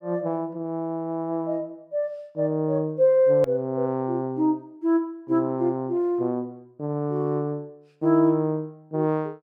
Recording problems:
click at an edit; at 3.5 s

